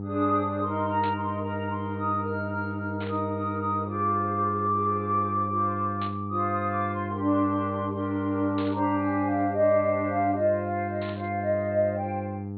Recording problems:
low-pass filter; nothing above 4.3 kHz
mains hum; 50 Hz, harmonics up to 900 Hz, SNR 7 dB
burst of static; 5 times, first at 1 s; peak -9 dB vs average level

